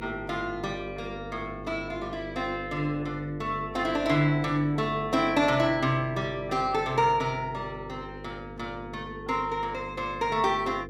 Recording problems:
hum; 50 Hz, harmonics up to 500 Hz, SNR 13 dB

